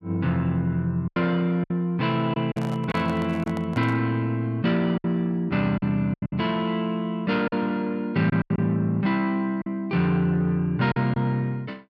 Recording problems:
packet loss; 6% of the sound replaced, filled with silence
handling noise; from 2.5 to 4 s; peak -9 dB vs average level

